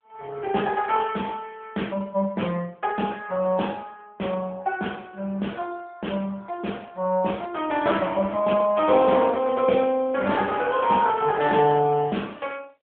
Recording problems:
phone line; 280 Hz to 3.4 kHz, AMR-NB

